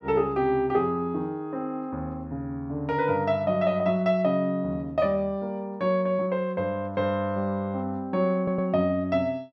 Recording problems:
stutter; at 8.5 s

